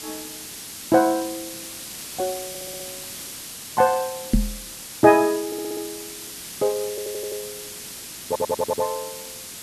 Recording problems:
hiss; SNR 10 dB
audio stuttering; 4 times, first at 2.5 s
microphone bump; at 4.5 s; peak +8 dB vs average level

